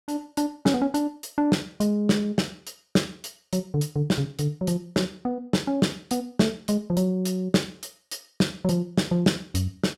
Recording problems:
none

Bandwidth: 16 kHz